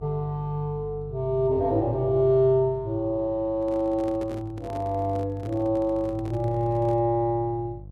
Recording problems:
electrical hum; 50 Hz, harmonics up to 500 Hz, SNR 16 dB
microphone handling noise; from 3.5 to 7 s; peak -10 dB vs average level

